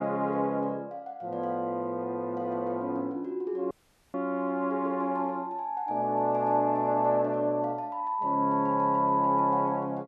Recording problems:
audio cutting out; at 3.5 s

